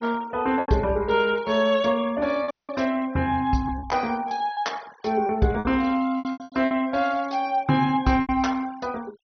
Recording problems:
low-pass filter; nothing above 6.1 kHz
noise reduction artefacts; signal-to-artefact ratio 23 dB
lost packets; 8% of the sound replaced, filled with repeated pitch periods
audio cutting out; at 2.5 s

